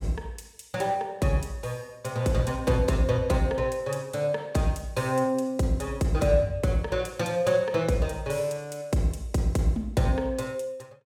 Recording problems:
none

